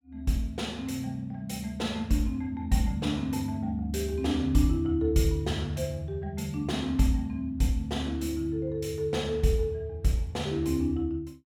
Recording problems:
none

